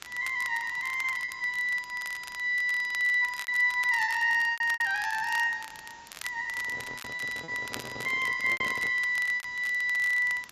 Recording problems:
codec artefacts; AAC, log-spectral distance 5 dB
hiss; slope -1 dB per octave, SNR 25 dB
crackle; vinyl, SNR 17 dB
lost packets; 7% of the sound replaced, filled with repeated pitch periods
handling noise; from 6.5 to 9 s; peak -11 dB vs average level

